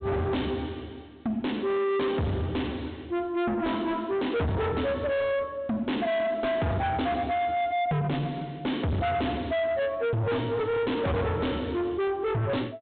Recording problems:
low-pass filter; nothing above 4 kHz
distortion; soft clipping, signal-to-distortion ratio 6 dB

